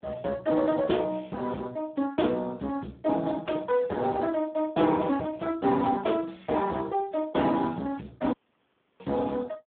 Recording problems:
phone line; 130 Hz to 3.6 kHz, Speex
distorted audio; soft clipping, signal-to-distortion ratio 12 dB
dropout; at 8.5 s for 0.5 s

